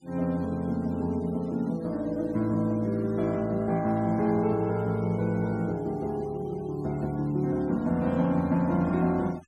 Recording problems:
denoising artefacts; signal-to-artefact ratio 26 dB

